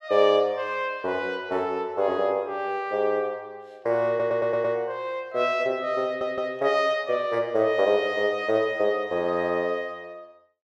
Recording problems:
audio stuttering; at 4 s and at 6 s

